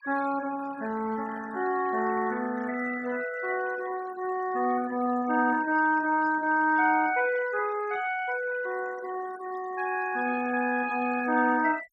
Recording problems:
noise reduction artefacts; signal-to-artefact ratio 18 dB

